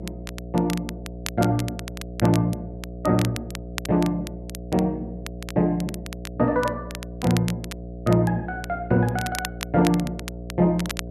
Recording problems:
hum; 60 Hz, harmonics up to 720 Hz, SNR 12 dB
crackling; vinyl, SNR 13 dB

